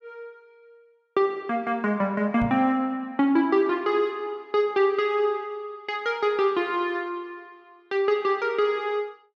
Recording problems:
knock on the microphone; at 2.5 s; peak -4 dB vs average level

